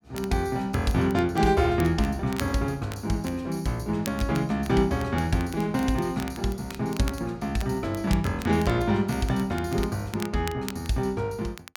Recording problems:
crackle; vinyl, SNR 17 dB

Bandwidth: 17 kHz